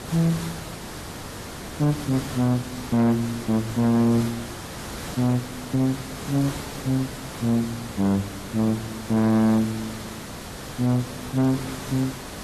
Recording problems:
lossy codec; AAC, log-spectral distance 6 dB, nothing above 13.1 kHz
distorted audio; hard clipping, uneven, signal-to-distortion ratio 6 dB
background hiss; slope -4 dB per octave, SNR 10 dB

